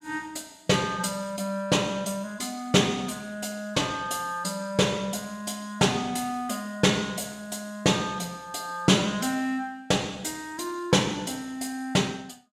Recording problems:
none

